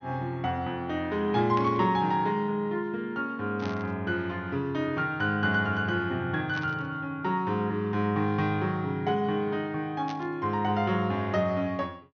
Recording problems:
treble missing; nothing above 6.4 kHz
burst of static; 4 times, first at 1.5 s; peak -7 dB vs average level

